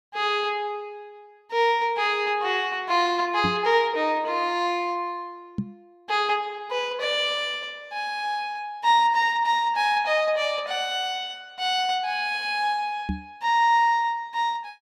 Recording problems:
microphone bump; at 3.5 s, at 5.5 s and at 13 s; peak 0 dB vs average level

